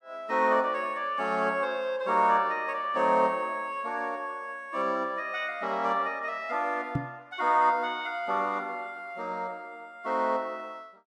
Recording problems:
microphone thump; at 7 s; peak +3 dB vs average level

